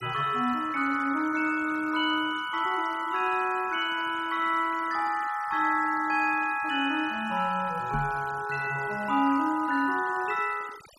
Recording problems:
noise reduction artefacts; signal-to-artefact ratio 19 dB
microphone bump; at 8 s; peak -1 dB vs average level

